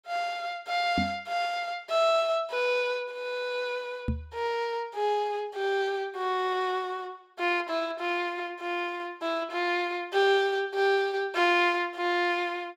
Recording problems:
microphone thump; at 1 s and at 4 s; peak +2 dB vs average level

